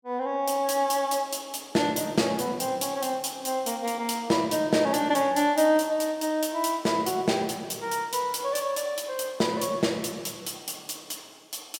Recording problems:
none

